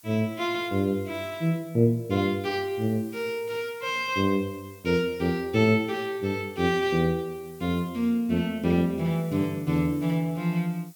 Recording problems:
hiss; slope +1 dB per octave, SNR 25 dB

